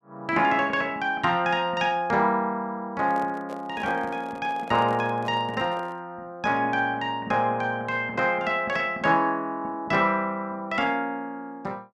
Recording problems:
handling noise; from 3 to 6 s; peak -10 dB vs average level

